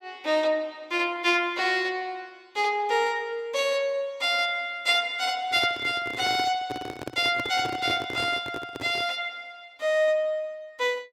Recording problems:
handling noise; from 5.5 to 9 s; peak -4 dB vs average level

